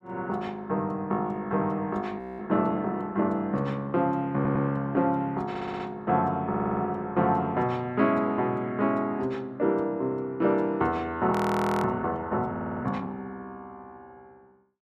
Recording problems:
audio freezing; at 2 s and at 11 s for 0.5 s
audio stuttering; 4 times, first at 4.5 s

